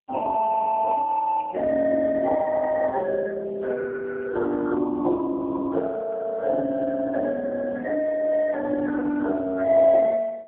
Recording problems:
telephone audio; 280 Hz to 2 kHz, AMR-NB

